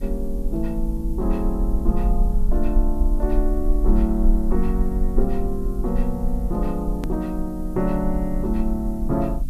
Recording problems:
mains hum; 50 Hz, harmonics up to 300 Hz, SNR 10 dB
hiss; slope +1 dB per octave, SNR 27 dB
low-frequency rumble; below 42 Hz, SNR 1 dB
edit click; at 7 s

